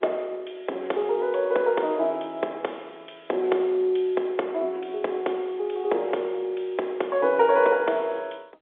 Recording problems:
telephone audio; 320 Hz to 3.5 kHz, G.711

